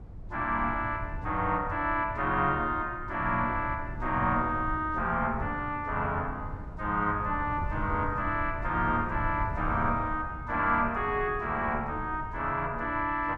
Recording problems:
wind noise; below 120 Hz, SNR 11 dB

